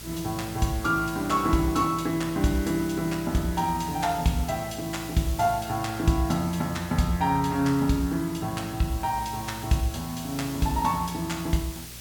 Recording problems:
electrical hum; 60 Hz, harmonics up to 780 Hz, SNR 19 dB
background hiss; SNR 14 dB

